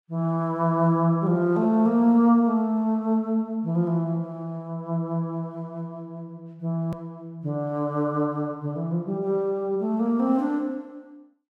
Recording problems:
edit click; at 7 s

